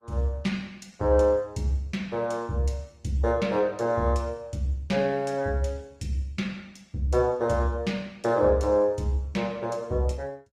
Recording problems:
codec artefacts; Opus, log-spectral distance 2 dB, nothing above 16.6 kHz

